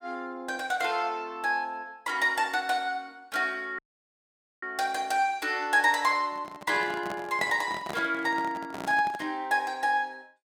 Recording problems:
audio cutting out; at 4 s for 1 s
microphone handling noise; from 6.5 to 9.5 s; peak -3 dB vs average level

